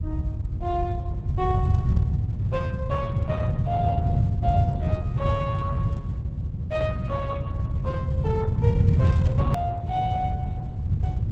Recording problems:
lossy compression; Opus, log-spectral distance 2 dB
hum; 60 Hz, harmonics up to 1.2 kHz, SNR 24 dB
low-frequency rumble; below 130 Hz, SNR -7 dB
click at an edit; at 9.5 s

